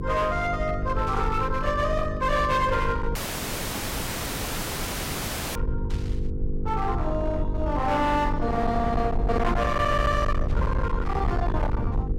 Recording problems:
distorted audio; hard clipping, signal-to-distortion ratio 7 dB
hum; 50 Hz, harmonics up to 500 Hz, SNR 8 dB
low-frequency rumble; below 100 Hz, SNR 5 dB
burst of static; at 1 s, at 6 s and at 10 s; peak -14 dB vs average level
dropout; at 3 s for 2.5 s

